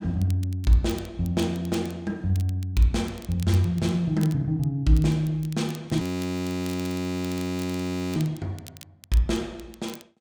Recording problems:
crackling; vinyl, SNR 21 dB
frozen audio; at 6 s for 2 s

